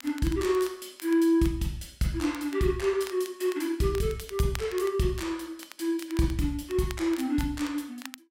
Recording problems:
crackling; vinyl, SNR 19 dB

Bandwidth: 16 kHz